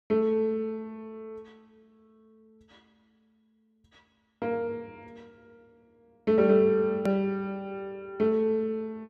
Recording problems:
edit click; at 7 s

